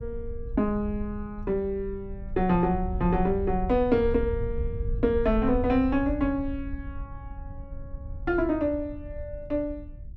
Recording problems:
low-frequency rumble; below 80 Hz, SNR 9 dB

